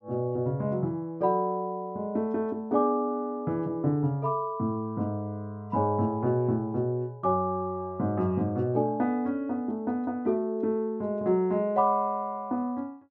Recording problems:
none

